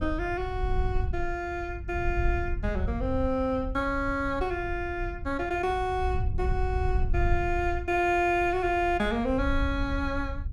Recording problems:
wind on the microphone; below 74 Hz, SNR 5 dB

